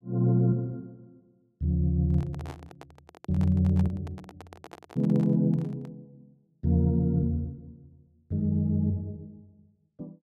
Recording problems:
microphone handling noise; from 2 to 6 s; peak -12 dB vs average level

